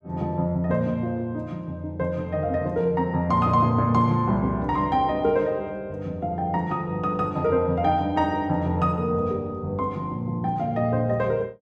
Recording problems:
none

